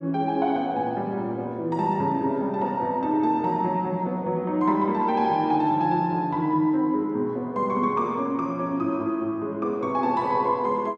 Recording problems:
none

